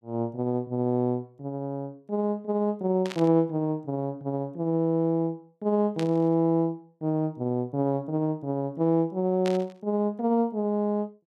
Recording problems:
burst of static; at 3 s, at 6 s and at 9.5 s; peak -5 dB vs average level

